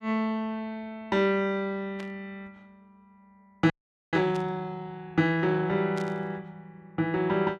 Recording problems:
static burst; at 2 s, at 4.5 s and at 6 s; peak -10 dB vs average level
frozen audio; at 3.5 s

